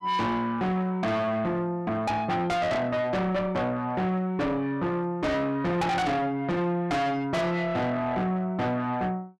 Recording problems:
distorted audio; soft clipping, signal-to-distortion ratio 6 dB

